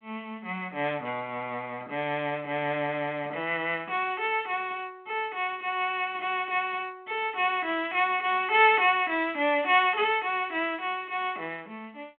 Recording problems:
phone line; 260 Hz to 3.5 kHz, G.726

